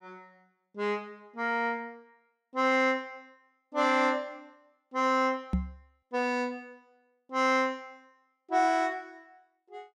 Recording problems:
microphone bump; at 5.5 s; peak +4 dB vs average level

